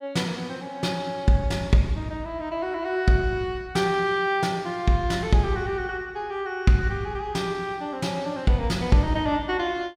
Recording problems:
none

